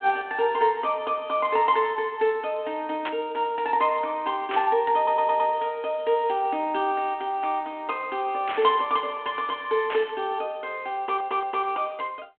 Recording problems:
telephone audio; 240 Hz to 3.5 kHz, G.726
static burst; 4 times, first at 3 s; peak -3 dB vs average level
audio stuttering; at 5 s and at 11 s

